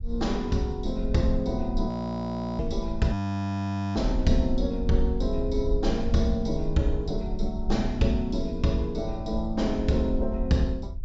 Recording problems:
low-pass filter; nothing above 7.5 kHz
rumble; below 56 Hz, SNR 7 dB
frozen audio; at 2 s for 0.5 s and at 3 s for 1 s

